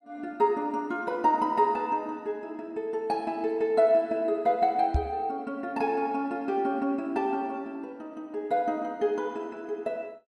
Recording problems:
microphone bump; at 5 s; peak +5 dB vs average level

